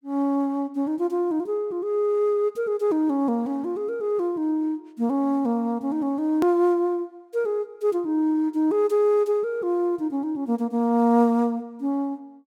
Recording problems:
edit click; at 6.5 s

